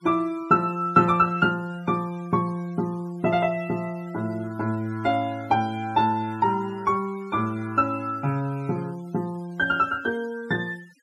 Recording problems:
denoising artefacts; signal-to-artefact ratio 25 dB

